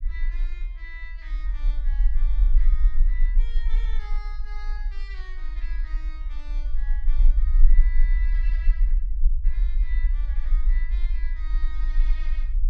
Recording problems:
rumble; below 38 Hz, strongest tone 28 Hz, SNR -19 dB

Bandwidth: 13 kHz